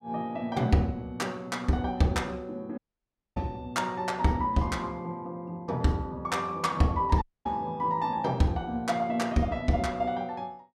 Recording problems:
audio cutting out; at 3 s for 0.5 s and at 7 s

